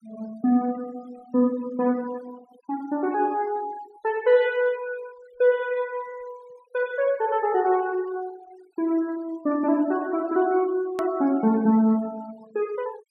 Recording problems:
denoising artefacts; signal-to-artefact ratio 24 dB
click at an edit; at 11 s

